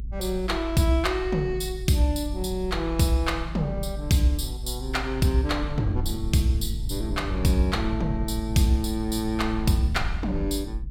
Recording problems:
rumble; below 66 Hz, strongest tone 52 Hz, SNR 8 dB

